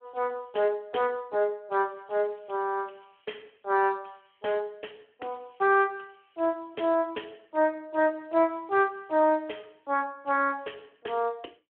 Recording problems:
phone line; 280 Hz to 3.3 kHz, Speex

